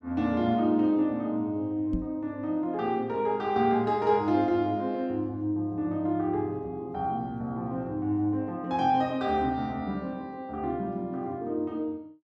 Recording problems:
microphone bump; at 2 s; peak 0 dB vs average level

